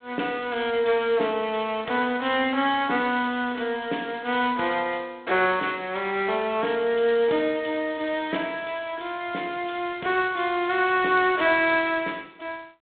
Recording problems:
telephone audio; 220 Hz to 3.8 kHz, G.726

